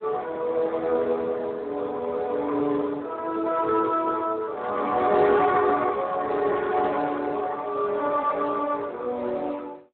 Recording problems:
phone line; 300 Hz to 2.6 kHz, Speex

